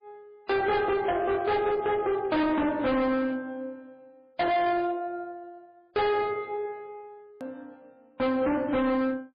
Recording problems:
lossy compression; MP3, log-spectral distance 2 dB, nothing above 4.1 kHz
distorted audio; hard clipping, signal-to-distortion ratio 6 dB
click at an edit; at 7.5 s

